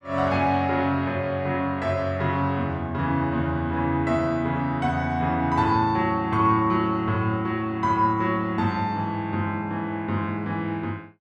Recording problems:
none

